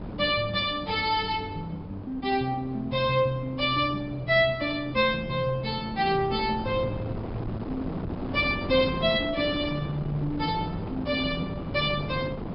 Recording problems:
low-pass filter; nothing above 5.5 kHz
wind noise; below 420 Hz, SNR 10 dB

